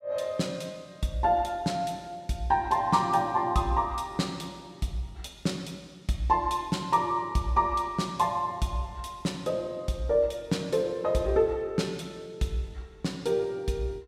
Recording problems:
none

